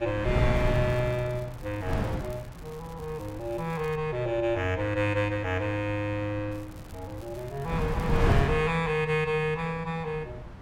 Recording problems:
wind noise; below 320 Hz, SNR 4 dB
crackling; from 0.5 to 4 s and from 6.5 to 8.5 s; loose cable, SNR 25 dB

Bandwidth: 16 kHz